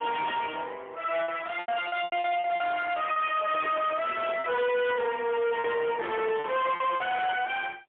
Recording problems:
phone line; 370 Hz to 3.6 kHz, AMR-NB, then MP3
distortion; soft clipping, signal-to-distortion ratio 7 dB
lost packets; 8% of the sound replaced, filled with repeated pitch periods

